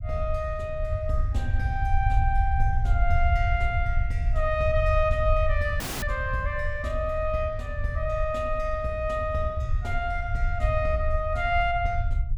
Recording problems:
low-frequency rumble; below 78 Hz, SNR 1 dB
dropout; at 6 s

